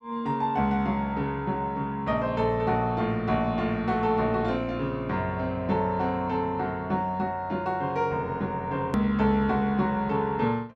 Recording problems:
click at an edit; at 9 s

